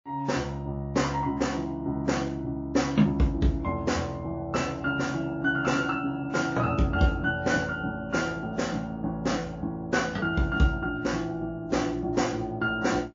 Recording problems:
codec artefacts; MP3, log-spectral distance 2 dB, nothing above 6.9 kHz

